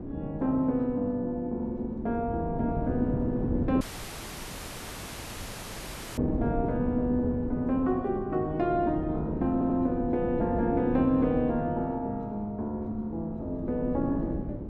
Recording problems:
wind on the microphone; below 320 Hz, SNR 6 dB
audio cutting out; at 4 s for 2.5 s
audio stuttering; at 9.5 s

